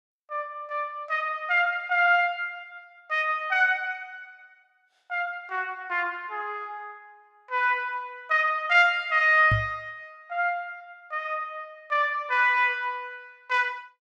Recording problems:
microphone bump; at 9.5 s; peak +2 dB vs average level

